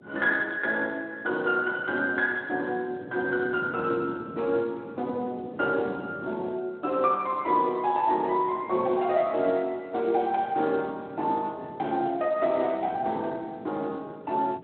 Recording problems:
telephone audio; 280 Hz to 3.3 kHz, Speex
wind on the microphone; below 420 Hz, SNR 17 dB

